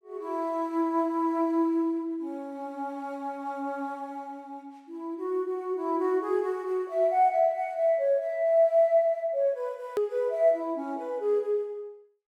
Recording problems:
hard cut with a click; at 10 s

